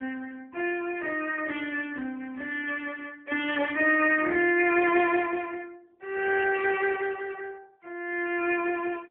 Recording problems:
phone line; 300 Hz to 3.4 kHz, AMR-NB

